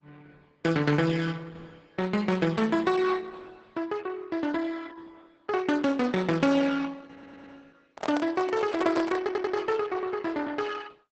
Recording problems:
lossy codec; Opus, log-spectral distance 4 dB, nothing above 8 kHz
audio stuttering; at 7 s and at 9 s
handling noise; from 8 to 9.5 s; peak -1 dB vs average level

